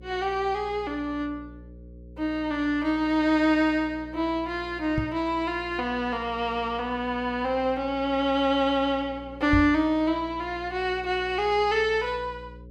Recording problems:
electrical hum; 60 Hz, harmonics up to 540 Hz, SNR 20 dB
microphone thump; at 5 s and at 9.5 s; peak +2 dB vs average level

